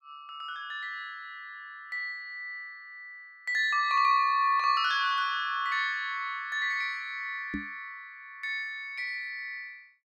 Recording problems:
microphone bump; at 7.5 s; peak -2 dB vs average level

